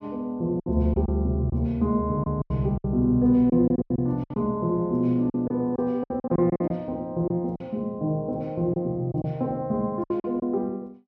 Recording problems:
packet loss; 10% of the sound replaced, filled with silence

